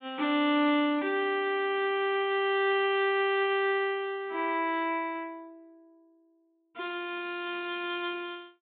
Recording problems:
treble cut off; nothing above 4 kHz

